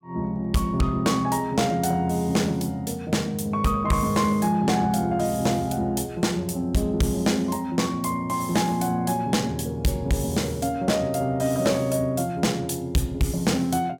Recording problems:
distorted audio; soft clipping, signal-to-distortion ratio 11 dB

